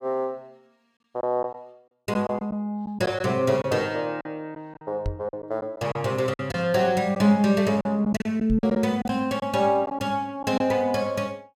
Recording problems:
packet loss; 7% of the sound replaced, filled with silence
microphone thump; at 5 s and at 8.5 s; peak -1 dB vs average level

